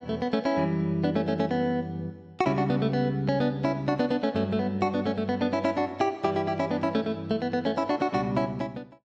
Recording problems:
none

